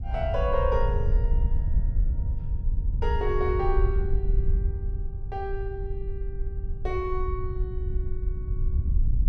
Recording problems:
wind on the microphone; below 68 Hz, SNR -3 dB

